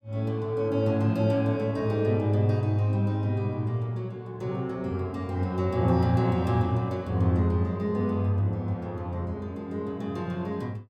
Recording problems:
none

